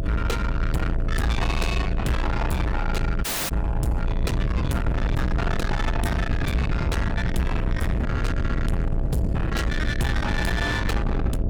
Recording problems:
distorted audio; soft clipping, signal-to-distortion ratio 6 dB
hum; 60 Hz, harmonics up to 660 Hz, SNR 11 dB
rumble; below 160 Hz, SNR 0 dB
dropout; at 3 s

